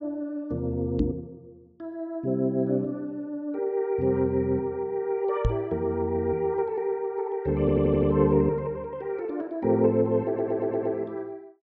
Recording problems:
low-pass filter; nothing above 7.3 kHz
knock on the microphone; at 1 s and at 5.5 s; peak +4 dB vs average level
audio stuttering; at 7.5 s and at 10 s

